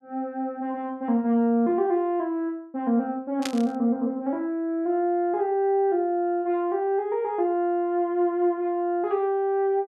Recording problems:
static burst; at 3.5 s; peak -1 dB vs average level

